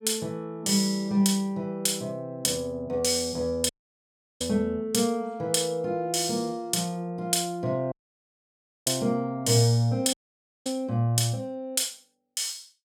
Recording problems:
dropout; at 3.5 s for 0.5 s, at 8 s for 1 s and at 10 s for 0.5 s

